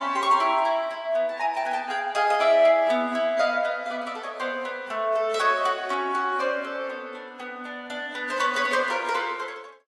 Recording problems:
lossy codec; AAC, log-spectral distance 2 dB

